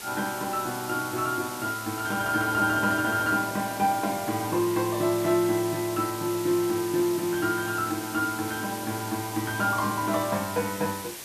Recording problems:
hiss; SNR 10 dB

